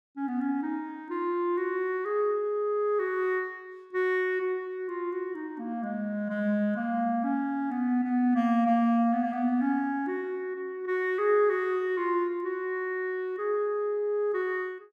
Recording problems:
none

